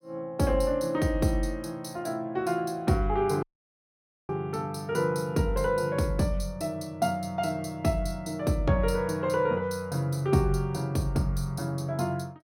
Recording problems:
dropout; at 3.5 s for 1 s

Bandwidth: 16.5 kHz